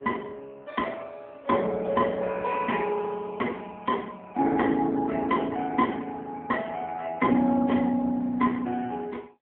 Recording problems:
telephone audio; 130 Hz to 3.5 kHz, AMR-NB

